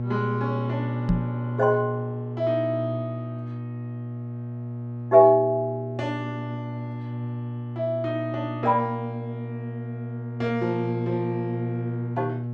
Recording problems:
electrical hum; 60 Hz, harmonics up to 600 Hz, SNR 6 dB
microphone thump; at 1 s; peak +6 dB vs average level

